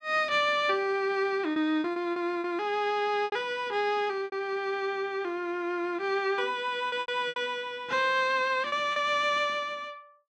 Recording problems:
packet loss; 6% of the sound replaced, filled with repeated pitch periods

